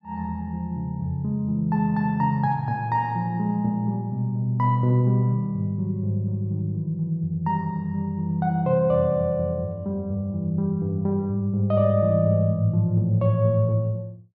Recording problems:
none

